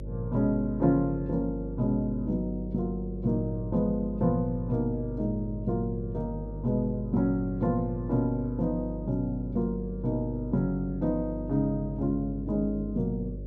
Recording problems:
hum; 50 Hz, harmonics up to 600 Hz, SNR 9 dB

